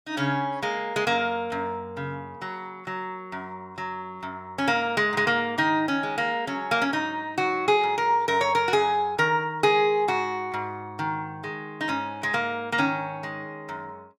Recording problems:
none

